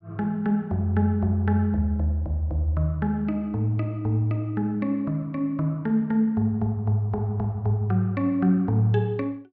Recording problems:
none

